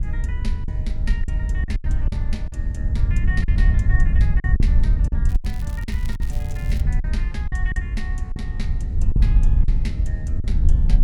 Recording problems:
hum; 50 Hz, harmonics up to 700 Hz, SNR 23 dB
wind noise; below 70 Hz, SNR -12 dB
packet loss; 8% of the sound replaced, filled with silence
crackle; from 5.5 to 7 s; loose cable, SNR 12 dB

